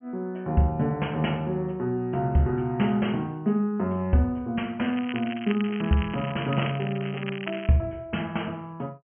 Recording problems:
low-pass filter; nothing above 3.1 kHz
crackle; from 5 to 7.5 s; loose cable, SNR 12 dB

